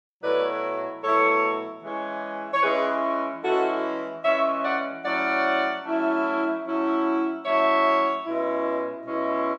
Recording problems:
none

